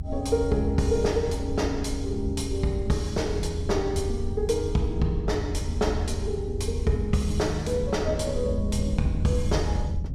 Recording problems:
low-frequency rumble; below 86 Hz, SNR 3 dB

